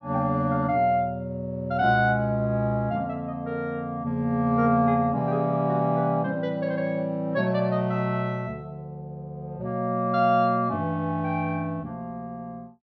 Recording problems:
treble missing; nothing above 6 kHz

